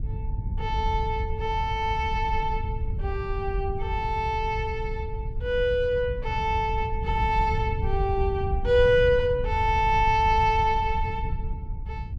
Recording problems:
wind on the microphone; below 92 Hz, SNR 6 dB

